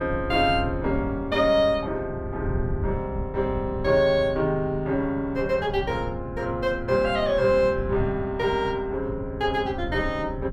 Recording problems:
wind noise; below 140 Hz, SNR 10 dB

